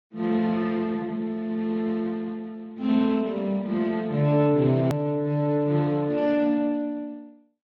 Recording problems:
codec artefacts; Speex, then MP3, log-spectral distance 2 dB, nothing above 17.7 kHz
hard cut with a click; at 5 s

